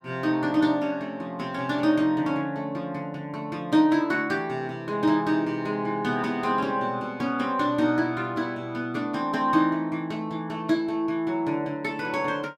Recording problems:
none

